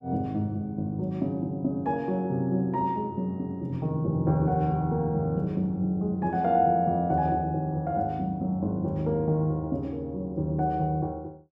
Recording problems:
none

